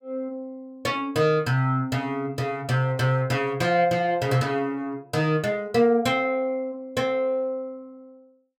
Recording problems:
none

